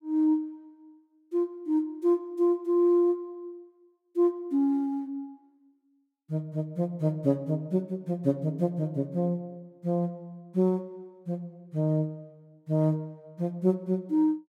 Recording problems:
none

